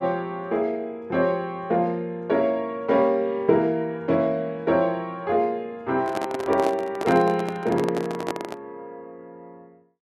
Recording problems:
handling noise; from 6 to 8.5 s; peak -1 dB vs average level

